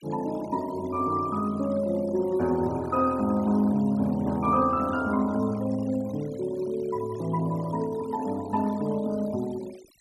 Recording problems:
denoising artefacts; signal-to-artefact ratio 21 dB

